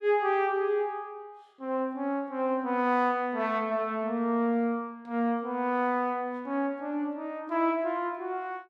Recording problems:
none

